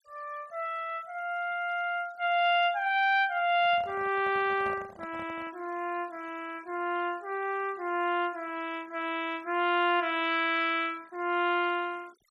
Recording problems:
noise reduction artefacts; signal-to-artefact ratio 25 dB
handling noise; from 3.5 to 5.5 s; peak -10 dB vs average level

